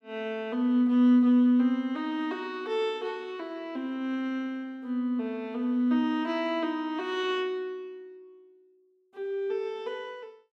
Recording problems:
none

